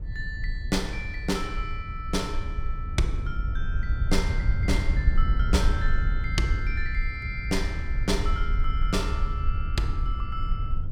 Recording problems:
rumble; below 68 Hz, SNR -2 dB

